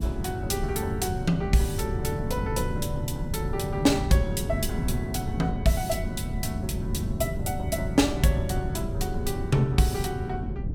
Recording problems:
wind noise; below 170 Hz, SNR 4 dB

